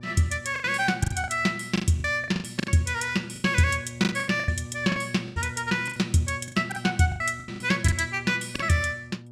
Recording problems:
electrical hum; 60 Hz, harmonics up to 600 Hz, SNR 16 dB
lost packets; 15% of the sound replaced, filled with the last packet

